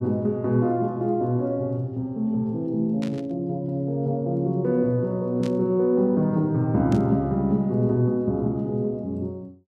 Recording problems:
burst of static; at 3 s, at 5.5 s and at 7 s; peak -12 dB vs average level

